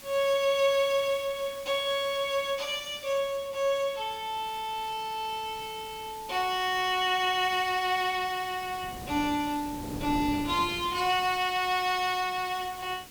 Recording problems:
hiss; slope 0 dB per octave, SNR 18 dB
wind noise; below 410 Hz, SNR 17 dB

